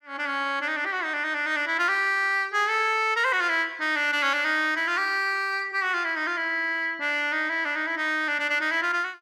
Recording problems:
none

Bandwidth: 14 kHz